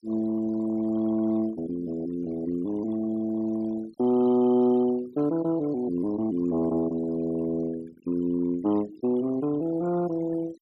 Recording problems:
denoising artefacts; signal-to-artefact ratio 20 dB

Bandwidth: 13 kHz